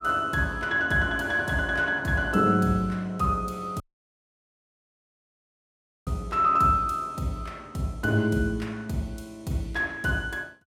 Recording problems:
audio cutting out; at 4 s for 2.5 s

